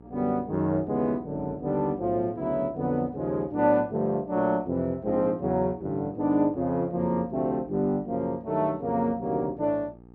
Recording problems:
mains hum; 60 Hz, harmonics up to 1.3 kHz, SNR 23 dB

